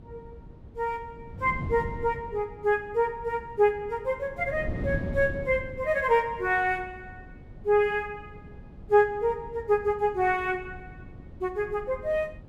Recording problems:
wind on the microphone; below 220 Hz, SNR 14 dB

